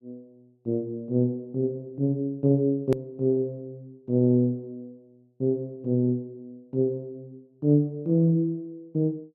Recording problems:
edit click; at 3 s

